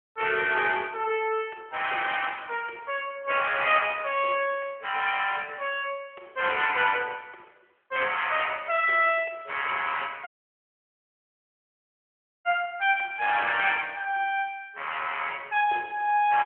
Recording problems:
telephone audio; 320 Hz to 3.3 kHz, AMR-NB
audio cutting out; at 10 s for 2 s

